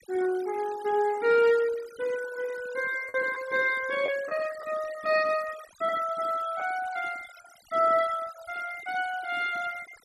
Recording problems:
noise reduction artefacts; signal-to-artefact ratio 18 dB
lost packets; 1.5% of the sound replaced, filled with the last packet

